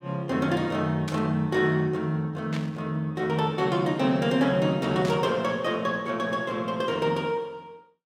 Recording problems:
burst of static; at 1 s, at 2.5 s and at 5 s; peak -7 dB vs average level

